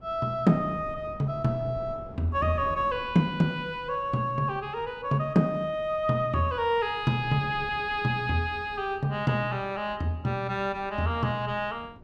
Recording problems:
wind on the microphone; below 330 Hz, SNR 19 dB

